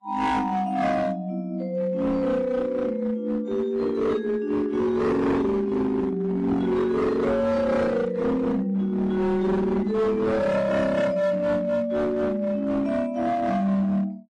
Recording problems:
lossy compression; AAC, then AAC, log-spectral distance 2 dB
distortion; hard clipping, signal-to-distortion ratio 10 dB

